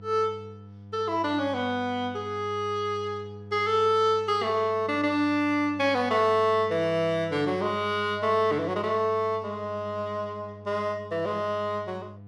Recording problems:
hum; 50 Hz, harmonics up to 700 Hz, SNR 18 dB

